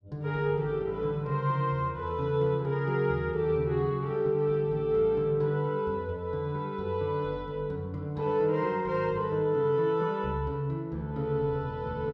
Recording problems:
none

